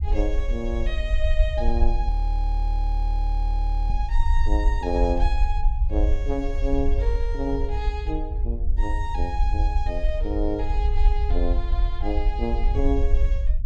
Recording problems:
low-frequency rumble; below 54 Hz, SNR -5 dB
audio freezing; at 2 s for 2 s

